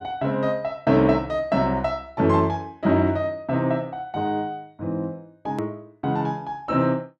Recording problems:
click at an edit; at 5.5 s

